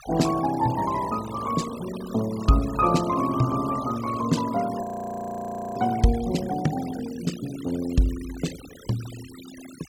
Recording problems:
denoising artefacts; signal-to-artefact ratio 16 dB
frozen audio; at 5 s for 1 s

